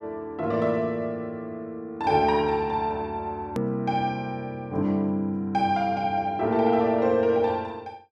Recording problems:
click at an edit; at 3.5 s

